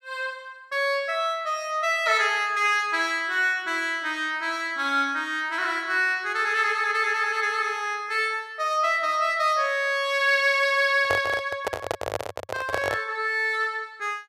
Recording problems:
handling noise; from 11 to 13 s; peak 0 dB vs average level

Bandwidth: 14.5 kHz